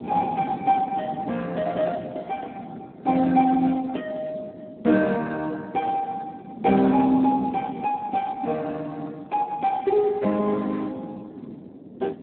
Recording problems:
phone line; 190 Hz to 2.3 kHz, Speex
wind noise; below 360 Hz, SNR 15 dB

